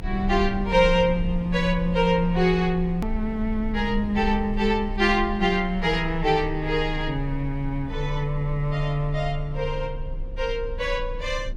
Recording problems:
rumble; below 54 Hz, strongest tone 30 Hz, SNR 10 dB
click at an edit; at 3 s

